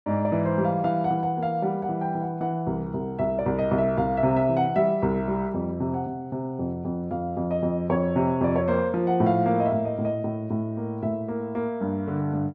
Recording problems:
none

